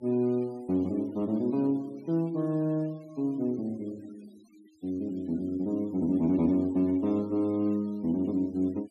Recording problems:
denoising artefacts; signal-to-artefact ratio 27 dB

